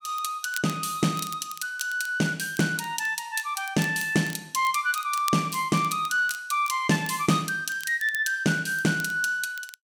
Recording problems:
crackling; vinyl, SNR 17 dB

